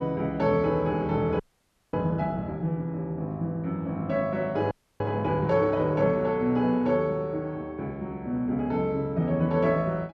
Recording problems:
audio freezing; at 1.5 s for 0.5 s and at 4.5 s

